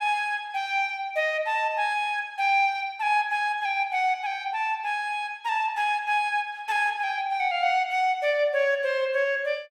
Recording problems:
none

